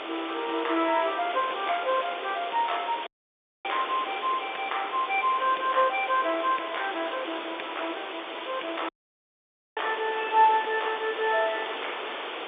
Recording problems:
telephone audio; 280 Hz to 3.6 kHz, G.711
hiss; SNR 7 dB
dropout; at 3 s for 0.5 s and at 9 s for 1 s
crackling; from 5 to 7 s; loose cable, SNR 24 dB

